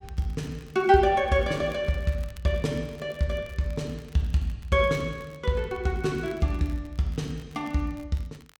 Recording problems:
crackling; vinyl, SNR 28 dB

